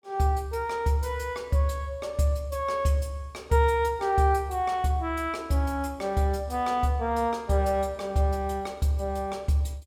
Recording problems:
none

